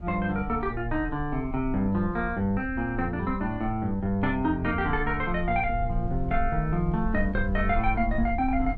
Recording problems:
low-frequency rumble; below 60 Hz, SNR 9 dB

